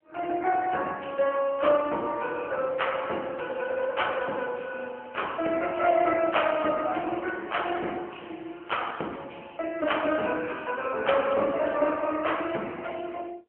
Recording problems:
phone line; 260 Hz to 3.2 kHz, AMR-NB

